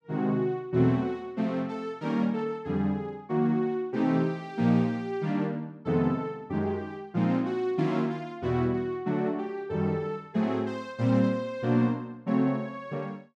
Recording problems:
none

